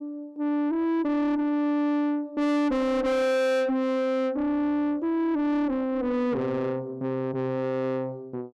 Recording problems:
distortion; soft clipping, signal-to-distortion ratio 6 dB

